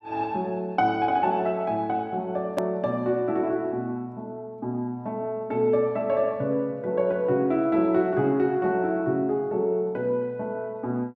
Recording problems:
click at an edit; at 2.5 s

